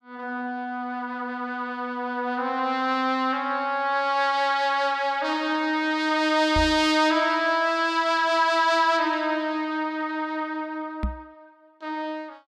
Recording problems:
microphone thump; at 6.5 s and at 11 s; peak 0 dB vs average level

